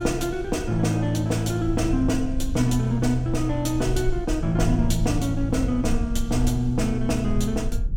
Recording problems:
rumble; below 66 Hz, SNR 8 dB

